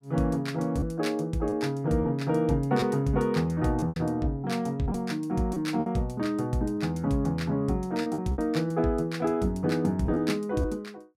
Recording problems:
packet loss; 5% of the sound replaced, filled with repeated pitch periods

